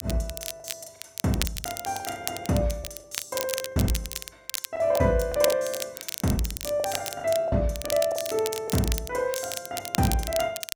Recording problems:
crackle; vinyl, SNR 7 dB
packet loss; 14% of the sound replaced, filled with the last packet

